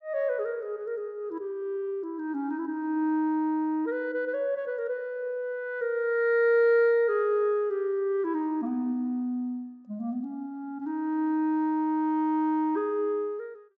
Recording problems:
treble cut off; nothing above 8 kHz

